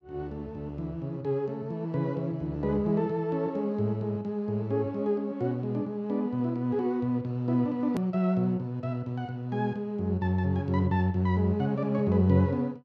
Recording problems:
click at an edit; at 8 s

